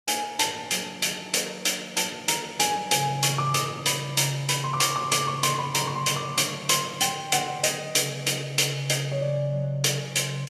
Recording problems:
none

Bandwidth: 14 kHz